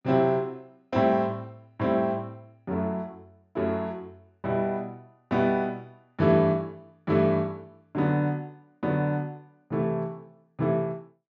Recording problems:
low-pass filter; nothing above 7.5 kHz

